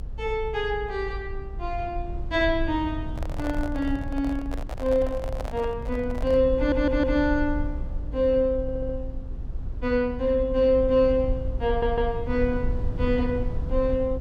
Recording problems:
low-frequency rumble; below 72 Hz, SNR 8 dB
handling noise; from 3 to 6.5 s; peak -6 dB vs average level
audio stuttering; at 6.5 s, at 8.5 s and at 12 s

